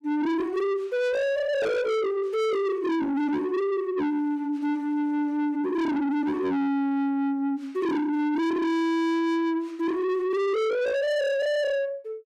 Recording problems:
distortion; soft clipping, signal-to-distortion ratio 7 dB

